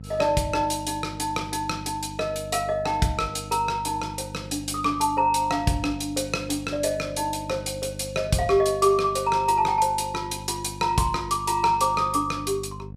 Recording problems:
hum; 50 Hz, harmonics up to 550 Hz, SNR 15 dB

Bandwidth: 14.5 kHz